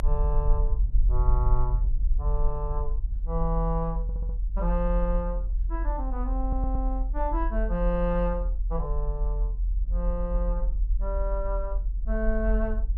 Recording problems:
low-frequency rumble; below 44 Hz, strongest tone 42 Hz, SNR -4 dB
audio stuttering; at 4 s and at 6.5 s

